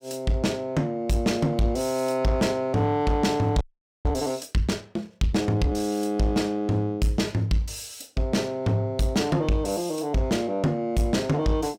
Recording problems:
distortion; soft clipping, signal-to-distortion ratio 12 dB
frozen audio; at 3.5 s

